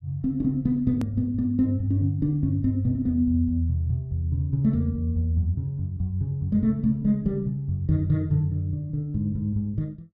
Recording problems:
edit click; at 1 s

